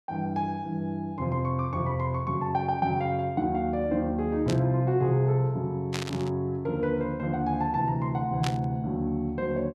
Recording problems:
burst of static; at 4.5 s, at 6 s and at 8.5 s; peak -1 dB vs average level

